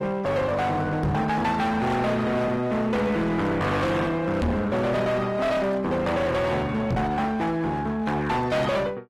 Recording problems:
codec artefacts; AAC, log-spectral distance 2 dB, nothing above 13.1 kHz
distorted audio; hard clipping, uneven, signal-to-distortion ratio 5 dB
microphone bump; at 1 s, at 4.5 s and at 7 s; peak +3 dB vs average level

